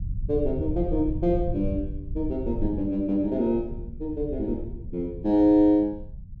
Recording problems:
rumble; below 94 Hz, SNR 10 dB

